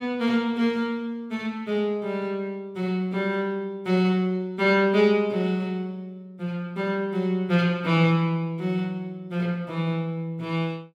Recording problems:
none

